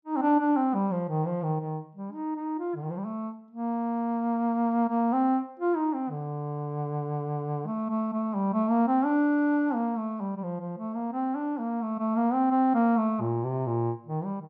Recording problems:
none

